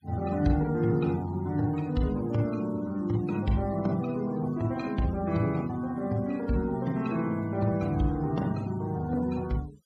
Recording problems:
denoising artefacts; signal-to-artefact ratio 23 dB

